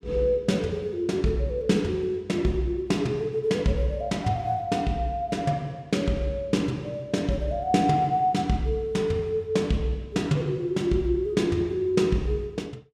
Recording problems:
none

